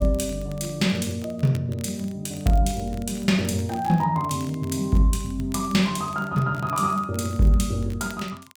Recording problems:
crackling; vinyl, SNR 23 dB

